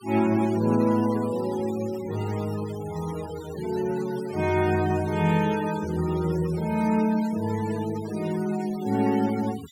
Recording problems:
noise reduction artefacts; signal-to-artefact ratio 17 dB

